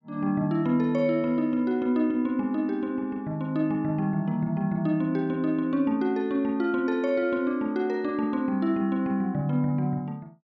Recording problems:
none

